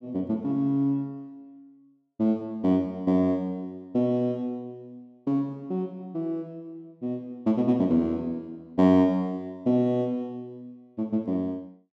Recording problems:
none

